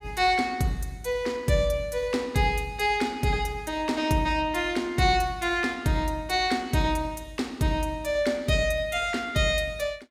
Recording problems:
none

